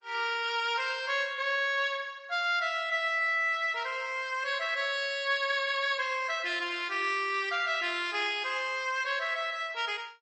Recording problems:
codec artefacts; MP3, then Opus, log-spectral distance 3 dB, nothing above 7.3 kHz

